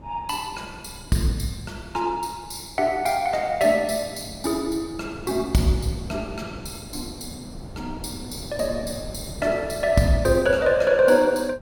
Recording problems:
wind on the microphone; below 340 Hz, SNR 17 dB

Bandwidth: 17.5 kHz